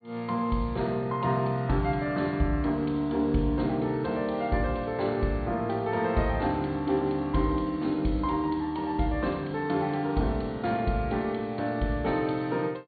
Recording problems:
treble missing; nothing above 4.5 kHz

